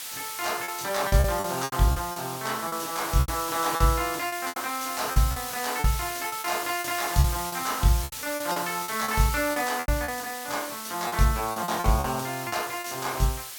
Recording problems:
hiss; slope +2 dB per octave, SNR 7 dB
packet loss; 12% of the sound replaced, filled with repeated pitch periods

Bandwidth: 17.5 kHz